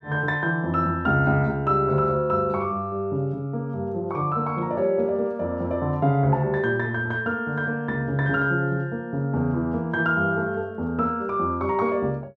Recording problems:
none

